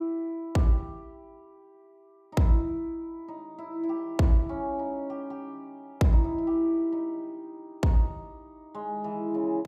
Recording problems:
none

